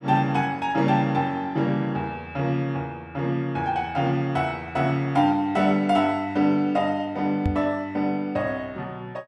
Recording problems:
microphone thump; at 7.5 s; peak +3 dB vs average level

